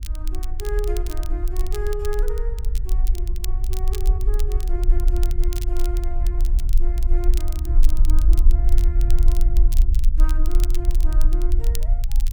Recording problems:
rumble; below 44 Hz, strongest tone 22 Hz, SNR -13 dB
crackle; vinyl, SNR 6 dB

